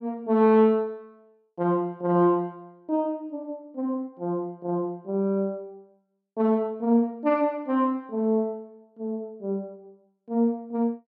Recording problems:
none

